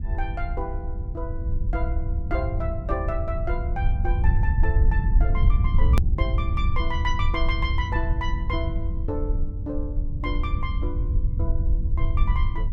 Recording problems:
rumble; below 76 Hz, SNR -7 dB
click at an edit; at 6 s

